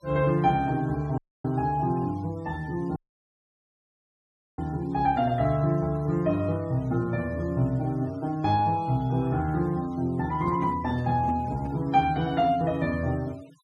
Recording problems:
denoising artefacts; signal-to-artefact ratio 26 dB
dropout; at 1 s and at 3 s for 1.5 s
microphone handling noise; from 10 to 12 s; peak -5 dB vs average level

